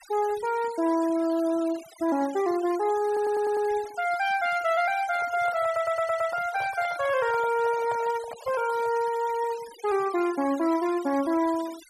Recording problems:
denoising artefacts; signal-to-artefact ratio 18 dB
stutter; at 3 s and at 5.5 s
handling noise; from 5 to 9 s; peak -8 dB vs average level

